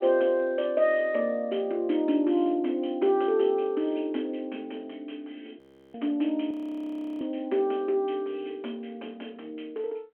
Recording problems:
phone line; 240 Hz to 3.3 kHz, G.726
frozen audio; at 5.5 s and at 6.5 s for 0.5 s

